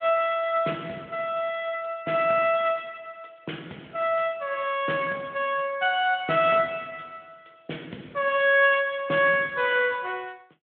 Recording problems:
phone line; 220 Hz to 3.4 kHz, Speex

